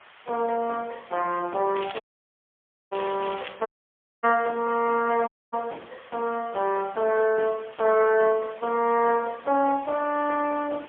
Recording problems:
telephone audio; 340 Hz to 2.5 kHz, AMR-NB, then MP3
background hiss; SNR 24 dB
crackling; from 2 to 3.5 s; loose cable, SNR 17 dB
audio cutting out; at 2 s for 1 s, at 3.5 s for 0.5 s and at 5.5 s

